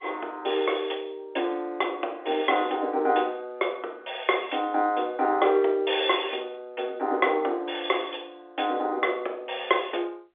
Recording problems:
telephone audio; 300 Hz to 3.6 kHz, G.711

